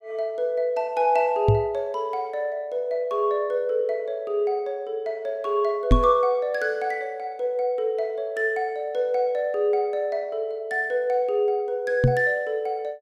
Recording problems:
knock on the microphone; at 1.5 s, at 6 s and at 12 s; peak +9 dB vs average level

